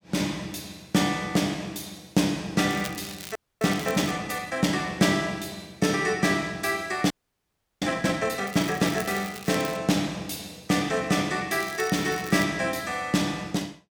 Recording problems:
crackling; from 2.5 to 4 s, from 8.5 to 10 s and at 12 s; loose cable, SNR 14 dB
frozen audio; at 3.5 s and at 7 s for 0.5 s

